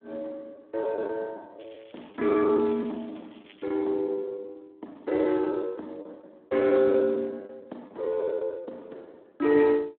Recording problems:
telephone audio; 240 Hz to 2.9 kHz, Speex
lost packets; 12% of the sound replaced, filled with the last packet
crackling; from 1.5 to 4 s; loose cable, SNR 27 dB

